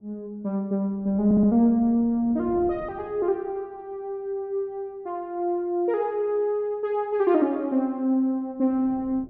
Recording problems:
wind noise; below 360 Hz, SNR 20 dB
stutter; at 1.5 s

